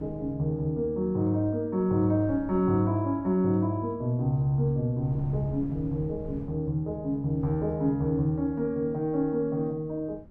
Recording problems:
wind noise; below 190 Hz, SNR 19 dB

